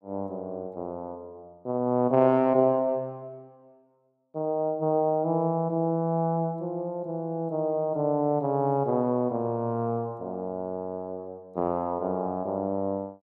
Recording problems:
none

